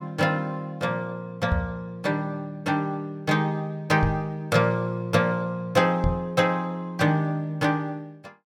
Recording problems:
microphone thump; at 1.5 s, at 4 s and at 6 s; peak +4 dB vs average level

